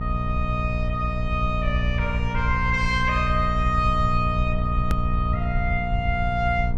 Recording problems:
hum; 60 Hz, harmonics up to 960 Hz, SNR 2 dB
low-frequency rumble; below 74 Hz, SNR 4 dB
click at an edit; at 5 s

